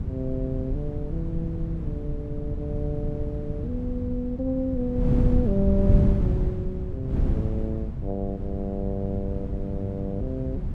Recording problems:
wind on the microphone; below 140 Hz, SNR -1 dB

